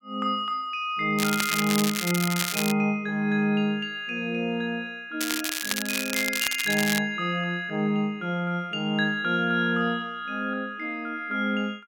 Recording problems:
crackling; from 1 to 2.5 s and from 5 to 7 s; loose cable, SNR 2 dB

